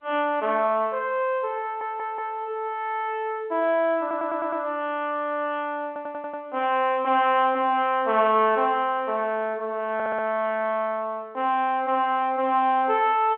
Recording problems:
telephone audio; 240 Hz to 3.4 kHz, G.711
audio stuttering; 4 times, first at 1.5 s

